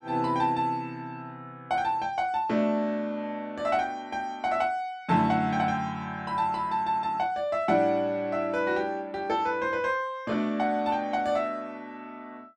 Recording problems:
none

